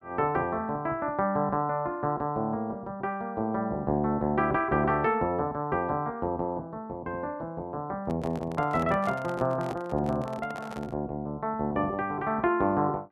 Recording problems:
handling noise; from 8 to 11 s; peak -7 dB vs average level

